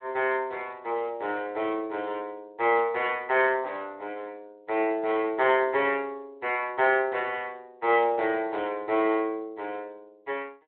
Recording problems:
phone line; 300 Hz to 3.4 kHz, Speex

